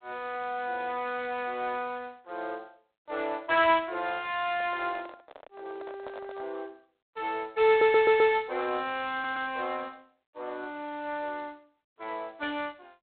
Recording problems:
phone line; 300 Hz to 3.9 kHz, G.726
microphone handling noise; from 4.5 to 6.5 s; peak -9 dB vs average level
stutter; at 7.5 s and at 9 s

